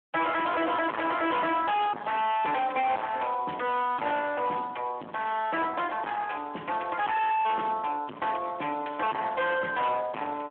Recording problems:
telephone audio; 220 Hz to 3.3 kHz, Speex
distortion; hard clipping, signal-to-distortion ratio 5 dB

